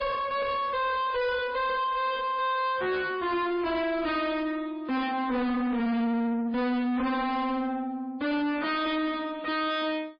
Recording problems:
lossy codec; MP3, log-spectral distance 2 dB, nothing above 5 kHz
distorted audio; soft clipping, signal-to-distortion ratio 5 dB

